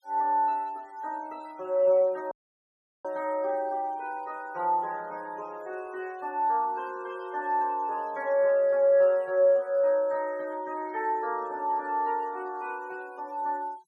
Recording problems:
denoising artefacts; signal-to-artefact ratio 28 dB
dropout; at 2.5 s for 0.5 s

